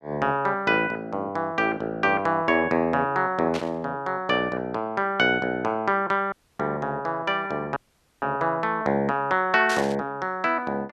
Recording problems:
burst of static; at 3.5 s and at 9.5 s; peak -3 dB vs average level
dropout; at 6.5 s and at 8 s

